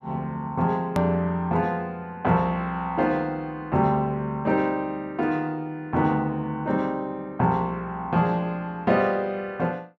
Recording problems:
click at an edit; at 1 s

